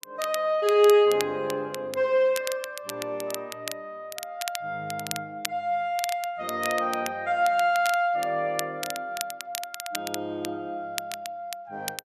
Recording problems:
crackling; vinyl, SNR 11 dB

